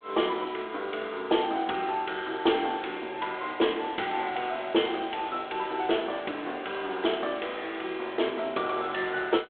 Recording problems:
telephone audio; 280 Hz to 3.6 kHz, G.726

